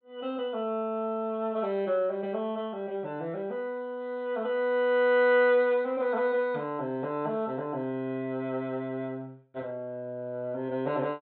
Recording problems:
treble missing; nothing above 4 kHz

